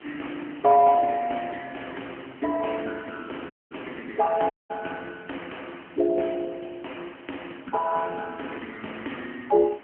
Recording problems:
phone line; 220 Hz to 3.1 kHz, AMR-NB
background hiss; SNR 22 dB
dropout; at 3.5 s and at 4.5 s

